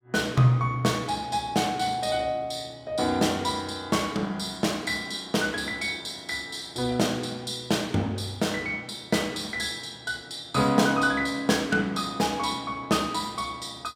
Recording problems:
none

